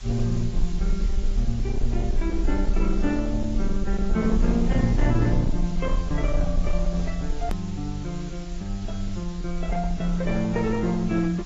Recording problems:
codec artefacts; AAC, then AAC, log-spectral distance 3 dB, nothing above 13.1 kHz
distortion; hard clipping, uneven, signal-to-distortion ratio 10 dB
background hiss; slope +1 dB per octave, SNR 18 dB
rumble; below 48 Hz, SNR 3 dB
edit click; at 7.5 s

